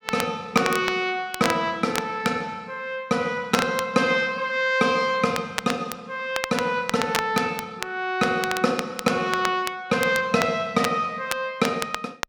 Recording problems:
crackling; vinyl, SNR 9 dB

